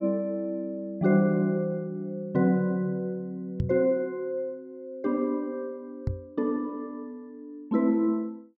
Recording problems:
microphone bump; at 3.5 s and at 6 s; peak +3 dB vs average level

